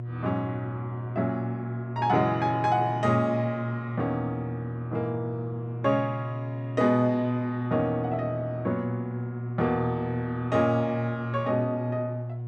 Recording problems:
hum; 60 Hz, harmonics up to 720 Hz, SNR 6 dB

